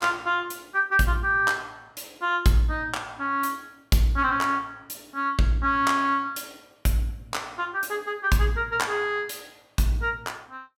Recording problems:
none

